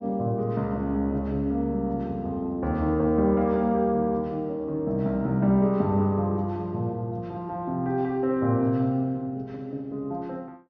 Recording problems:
treble missing; nothing above 6.2 kHz

